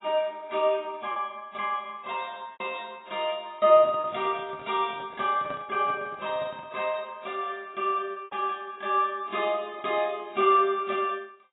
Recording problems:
lossy compression; AAC, log-spectral distance 3 dB, nothing above 3.2 kHz
lost packets; 2% of the sound replaced, filled with repeated pitch periods
handling noise; from 3.5 to 7 s; peak -10 dB vs average level

